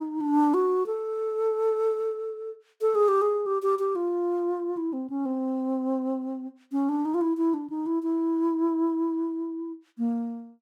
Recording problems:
none

